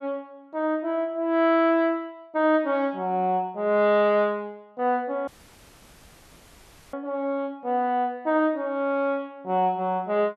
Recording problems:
audio cutting out; at 5.5 s for 1.5 s

